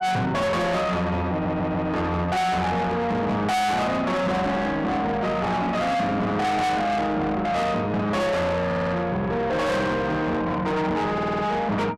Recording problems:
distortion; soft clipping, signal-to-distortion ratio 6 dB
audio stuttering; at 1.5 s, at 8.5 s and at 11 s

